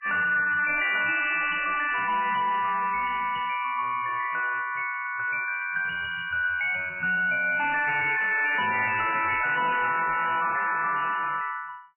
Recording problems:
lossy compression; MP3, log-spectral distance 7 dB, nothing above 2.7 kHz
distortion; hard clipping, uneven, signal-to-distortion ratio 6 dB

